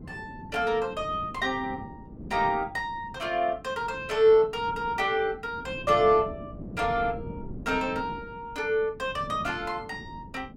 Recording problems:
wind on the microphone; below 280 Hz, SNR 15 dB

